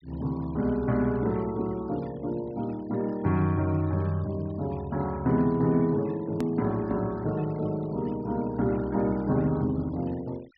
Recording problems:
low-pass filter; nothing above 5.5 kHz
denoising artefacts; signal-to-artefact ratio 25 dB
click at an edit; at 6.5 s

